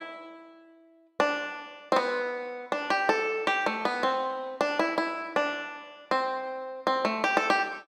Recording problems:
none

